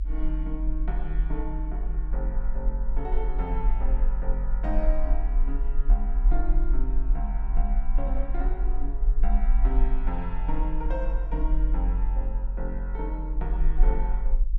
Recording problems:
low-frequency rumble; below 44 Hz, SNR -8 dB

